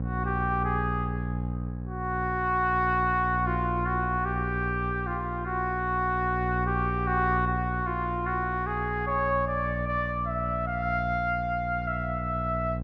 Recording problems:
hum; 60 Hz, harmonics up to 780 Hz, SNR 5 dB

